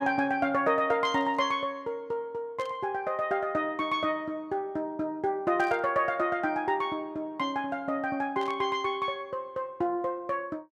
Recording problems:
static burst; 4 times, first at 1 s; peak -13 dB vs average level

